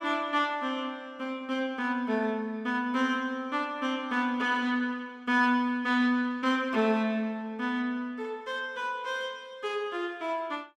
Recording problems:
none

